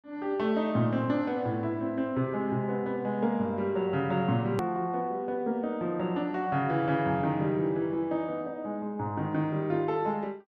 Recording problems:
edit click; at 4.5 s

